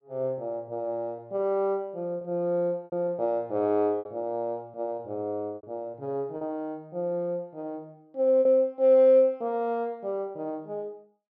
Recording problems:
packet loss; 5% of the sound replaced, filled with repeated pitch periods

